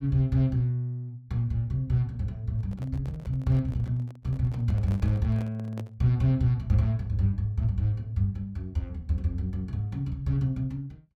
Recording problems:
microphone handling noise; from 2.5 to 6 s; peak -10 dB vs average level

